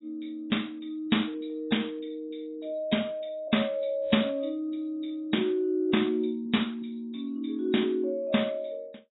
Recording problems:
codec artefacts; AAC, log-spectral distance 5 dB, nothing above 3.8 kHz

